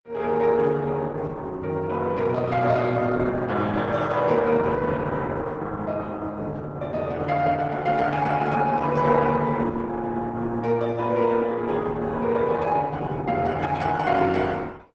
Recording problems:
codec artefacts; Opus, log-spectral distance 3 dB, nothing above 8 kHz

